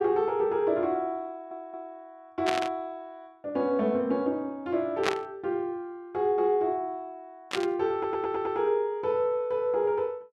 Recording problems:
audio stuttering; at 1.5 s and at 8 s
burst of static; at 2.5 s, at 5 s and at 7.5 s; peak +5 dB vs average level

